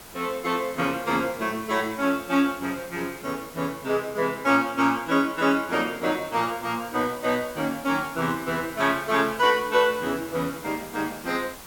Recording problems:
hiss; slope -3 dB per octave, SNR 17 dB

